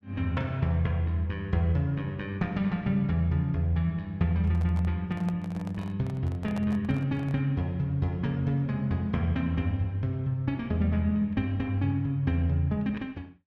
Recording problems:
handling noise; from 4.5 to 7.5 s; peak -8 dB vs average level

